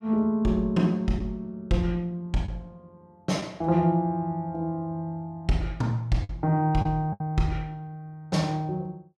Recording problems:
lost packets; 2% of the sound replaced, filled with the last packet

